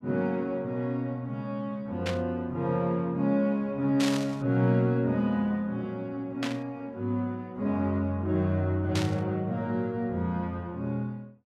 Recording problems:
static burst; 4 times, first at 2 s; peak +1 dB vs average level

